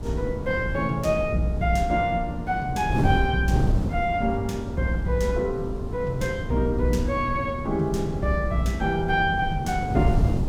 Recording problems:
wind noise; below 200 Hz, SNR 5 dB

